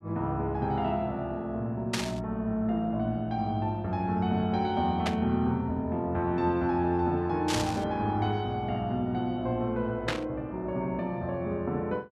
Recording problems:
static burst; 4 times, first at 2 s; peak +3 dB vs average level

